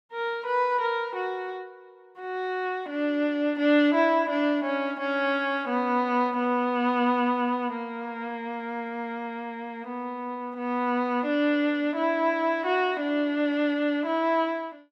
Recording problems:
none

